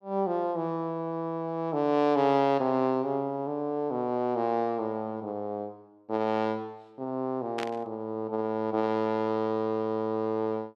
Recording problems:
static burst; at 7.5 s; peak -3 dB vs average level

